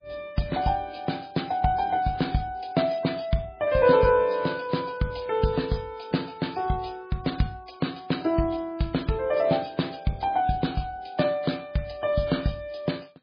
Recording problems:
lossy codec; MP3, log-spectral distance 5 dB, nothing above 5 kHz

